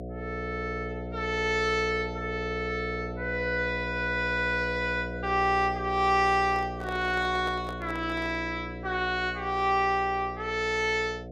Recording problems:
hum; 60 Hz, harmonics up to 720 Hz, SNR 9 dB
microphone handling noise; from 6.5 to 8.5 s; peak -8 dB vs average level

